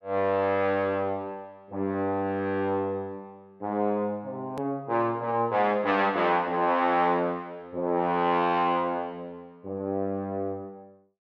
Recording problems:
edit click; at 4.5 s

